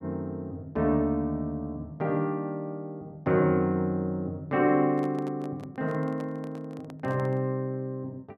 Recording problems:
microphone handling noise; from 5 to 7.5 s; peak -11 dB vs average level

